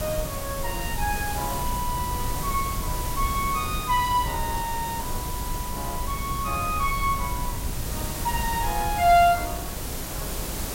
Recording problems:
hiss; slope -4 dB per octave, SNR 6 dB
rumble; below 110 Hz, SNR 8 dB

